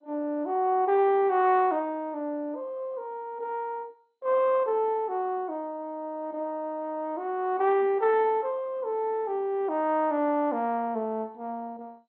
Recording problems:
codec artefacts; MP2, log-spectral distance 2 dB, nothing above 3.7 kHz

